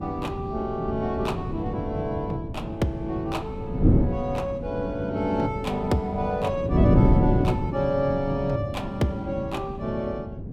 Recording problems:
wind on the microphone; below 260 Hz, SNR 0 dB

